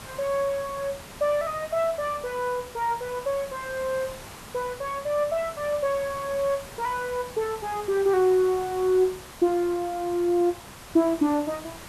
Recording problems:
hiss; SNR 15 dB

